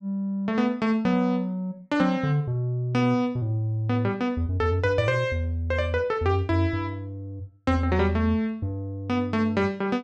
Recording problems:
none

